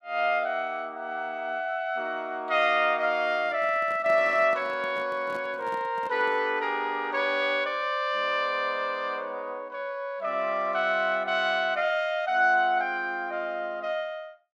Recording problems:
handling noise; from 3.5 to 6.5 s; peak -11 dB vs average level

